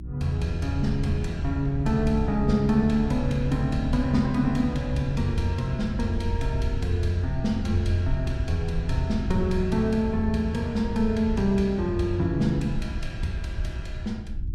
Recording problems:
hum; 60 Hz, harmonics up to 360 Hz, SNR 16 dB
low-frequency rumble; below 82 Hz, SNR 8 dB

